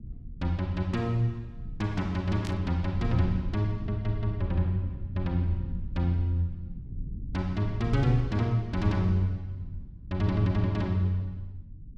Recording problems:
rumble; below 110 Hz, SNR 11 dB
static burst; at 2.5 s; peak -8 dB vs average level

